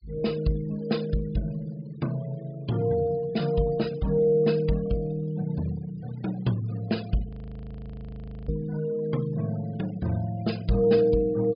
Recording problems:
treble missing; nothing above 5.1 kHz
noise reduction artefacts; signal-to-artefact ratio 22 dB
frozen audio; at 7.5 s for 1 s

